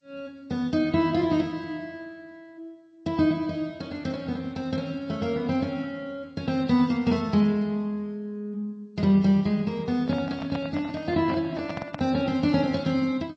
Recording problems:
lossy compression; MP3, then G.722, log-spectral distance 2 dB
microphone handling noise; from 10 to 12 s; peak -4 dB vs average level

